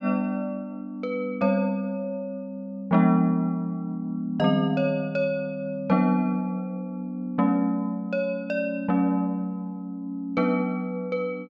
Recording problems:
none

